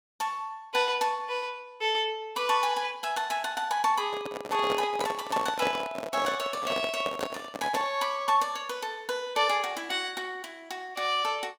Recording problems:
microphone handling noise; from 4 to 8 s; peak +2 dB vs average level

